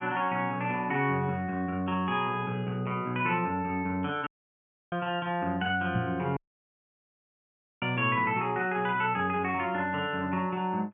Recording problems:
low-pass filter; nothing above 3.3 kHz
audio cutting out; at 4.5 s for 0.5 s and at 6.5 s for 1.5 s
microphone thump; at 6 s; peak +1 dB vs average level

